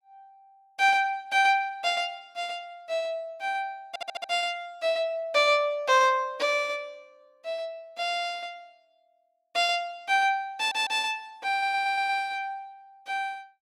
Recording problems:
stutter; at 4 s, at 11 s and at 12 s

